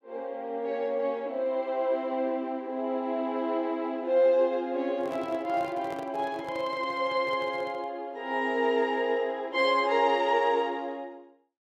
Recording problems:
microphone handling noise; from 5 to 8 s; peak -10 dB vs average level

